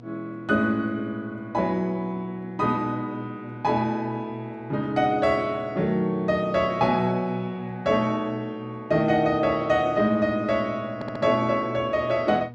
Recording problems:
hum; 60 Hz, harmonics up to 960 Hz, SNR 18 dB
audio stuttering; at 11 s

